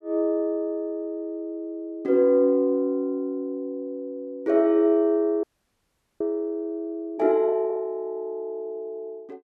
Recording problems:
audio freezing; at 5.5 s for 1 s

